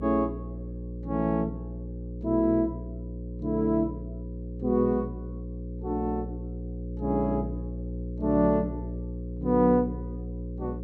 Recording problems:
electrical hum; 60 Hz, harmonics up to 540 Hz, SNR 9 dB

